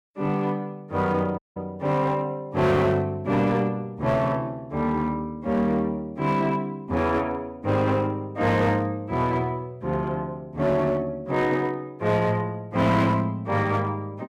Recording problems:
distorted audio; hard clipping, uneven, signal-to-distortion ratio 12 dB
audio cutting out; at 1.5 s

